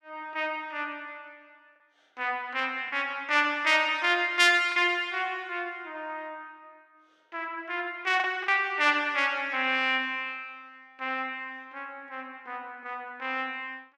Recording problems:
packet loss; 1.3% of the sound replaced, filled with the last packet

